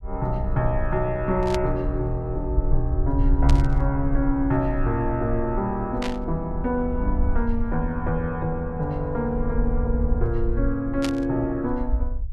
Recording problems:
low-frequency rumble; below 62 Hz, SNR 4 dB
static burst; 4 times, first at 1.5 s; peak 0 dB vs average level

